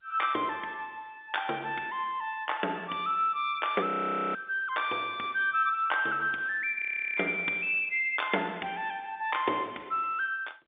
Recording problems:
telephone audio; 260 Hz to 3.6 kHz, G.711
frozen audio; at 4 s and at 7 s

